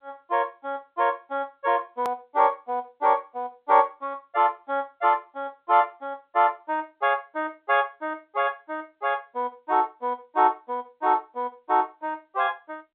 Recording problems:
phone line; 280 Hz to 3.9 kHz, G.711
edit click; at 2 s

